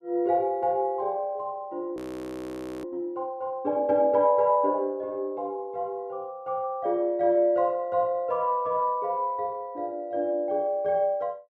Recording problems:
audio freezing; at 2 s for 1 s

